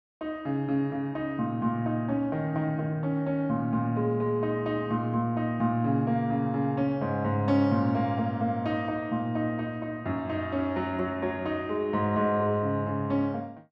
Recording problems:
none

